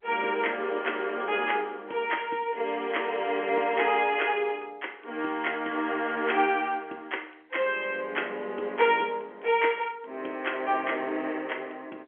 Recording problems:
telephone audio; 260 Hz to 3.3 kHz, G.711

